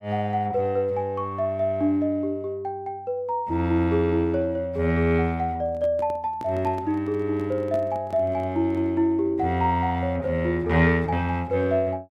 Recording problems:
microphone handling noise; from 5.5 to 9 s; peak -9 dB vs average level

